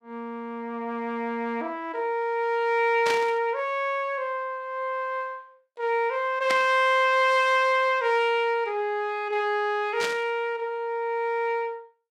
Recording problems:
burst of static; at 3 s, at 6.5 s and at 10 s; peak 0 dB vs average level

